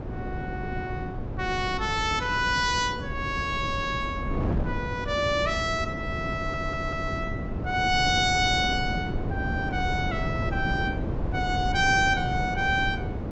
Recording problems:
treble cut off; nothing above 7.8 kHz
wind on the microphone; below 300 Hz, SNR 5 dB
stutter; at 6.5 s

